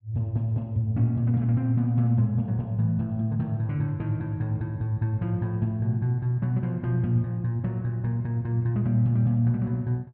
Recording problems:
none

